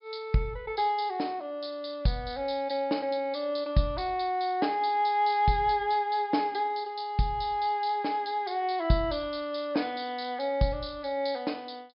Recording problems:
low-pass filter; nothing above 5.5 kHz

